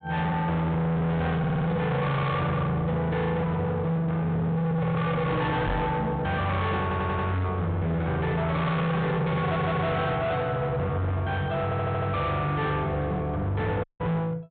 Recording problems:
treble cut off; nothing above 4 kHz
distorted audio; hard clipping, signal-to-distortion ratio 6 dB
stutter; 4 times, first at 1.5 s
microphone bump; at 5.5 s; peak +1 dB vs average level
audio cutting out; at 14 s

